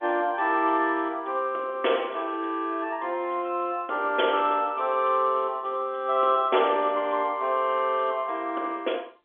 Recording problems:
telephone audio; 280 Hz to 3.5 kHz, G.711

